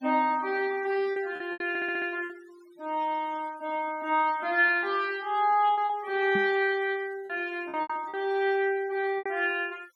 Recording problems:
denoising artefacts; signal-to-artefact ratio 24 dB
lost packets; 6% of the sound replaced, filled with repeated pitch periods
stutter; at 1.5 s
microphone bump; at 6.5 s; peak -3 dB vs average level

